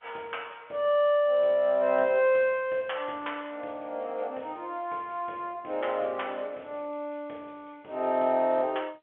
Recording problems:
telephone audio; 320 Hz to 3.6 kHz, G.711

